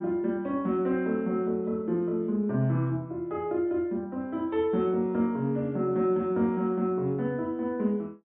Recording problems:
low-pass filter; nothing above 4 kHz

